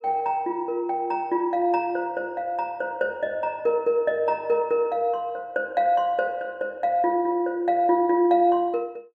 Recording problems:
none

